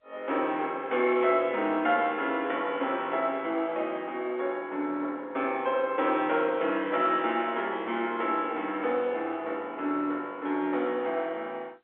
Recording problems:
telephone audio; 240 Hz to 3.5 kHz, G.711

